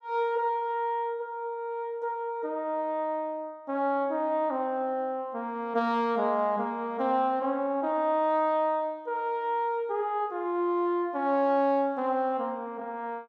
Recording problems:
none

